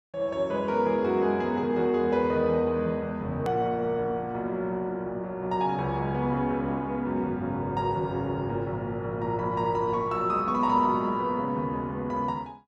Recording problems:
hard cut with a click; at 3.5 s

